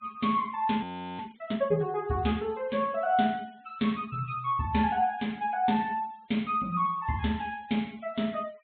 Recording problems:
treble missing; nothing above 4 kHz
denoising artefacts; signal-to-artefact ratio 27 dB
frozen audio; at 1 s

